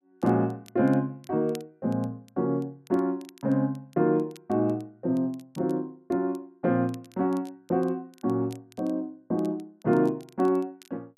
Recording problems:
crackle; vinyl, SNR 29 dB

